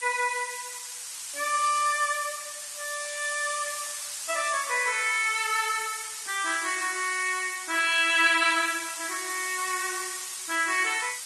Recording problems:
lossy codec; Vorbis, then Opus, log-spectral distance 18 dB
background hiss; slope +5 dB per octave, SNR 7 dB

